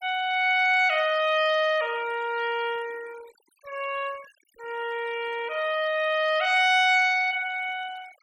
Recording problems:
noise reduction artefacts; signal-to-artefact ratio 22 dB

